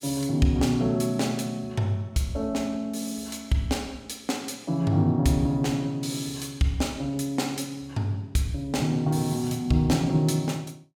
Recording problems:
none

